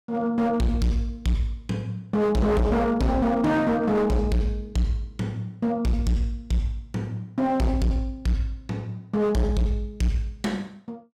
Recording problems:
distortion; hard clipping, signal-to-distortion ratio 8 dB

